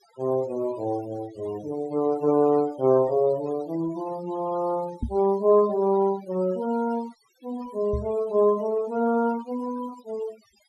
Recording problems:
noise reduction artefacts; signal-to-artefact ratio 21 dB
knock on the microphone; at 5 s and at 8 s; peak -1 dB vs average level

